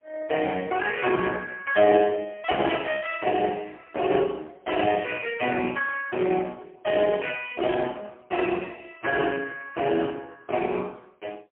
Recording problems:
telephone audio; 260 Hz to 2.9 kHz, AMR-NB, then MP3

